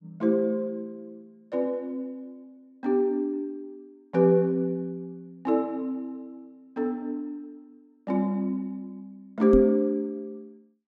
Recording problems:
microphone thump; at 9.5 s; peak +7 dB vs average level

